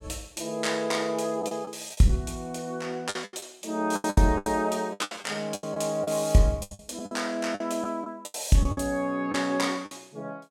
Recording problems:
lost packets; 13% of the sound replaced, filled with the last packet

